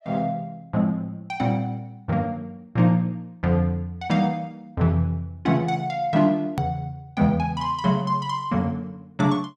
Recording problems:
click at an edit; at 6.5 s

